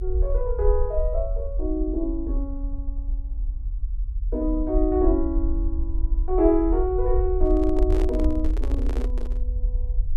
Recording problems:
rumble; below 50 Hz, SNR 2 dB
microphone handling noise; from 7.5 to 9.5 s; peak -5 dB vs average level

